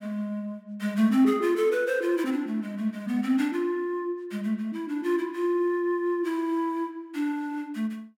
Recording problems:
none

